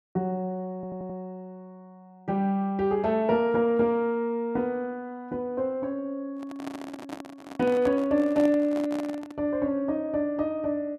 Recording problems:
stutter; at 0.5 s
handling noise; from 6.5 to 9.5 s; peak -6 dB vs average level

